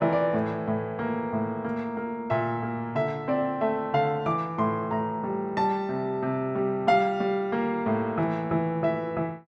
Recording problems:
none

